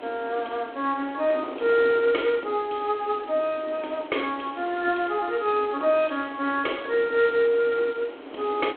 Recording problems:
telephone audio; 240 Hz to 3.5 kHz, G.726
hiss; SNR 27 dB
wind on the microphone; below 800 Hz, SNR 16 dB

